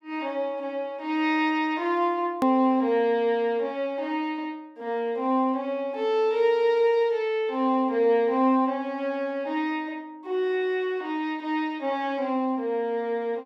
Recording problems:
hard cut with a click; at 2.5 s

